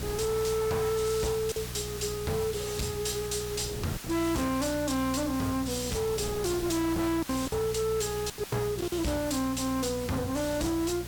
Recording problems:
distortion; soft clipping, signal-to-distortion ratio 7 dB
mains hum; 60 Hz, harmonics up to 420 Hz, SNR 12 dB
background hiss; slope 0 dB per octave, SNR 11 dB
wind noise; below 460 Hz, SNR 16 dB
packet loss; 4% of the sound replaced, filled with silence

